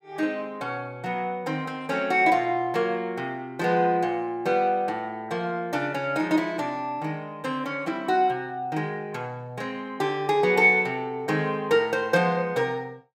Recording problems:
none

